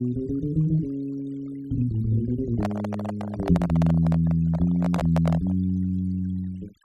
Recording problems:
noise reduction artefacts; signal-to-artefact ratio 25 dB
microphone handling noise; from 2.5 to 5.5 s; peak -1 dB vs average level

